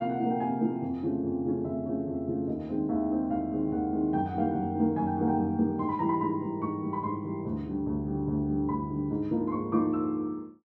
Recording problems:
none

